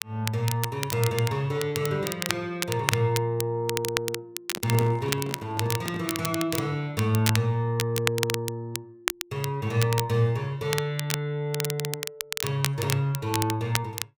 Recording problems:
crackle; vinyl, SNR 5 dB
handling noise; from 4.5 to 6 s; peak -5 dB vs average level

